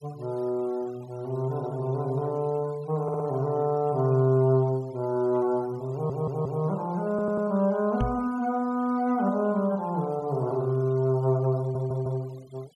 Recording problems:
noise reduction artefacts; signal-to-artefact ratio 26 dB
audio stuttering; 4 times, first at 3 s
microphone bump; at 8 s; peak +1 dB vs average level

